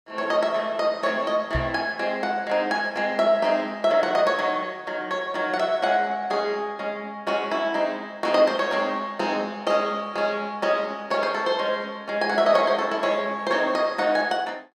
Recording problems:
knock on the microphone; at 1.5 s; peak 0 dB vs average level

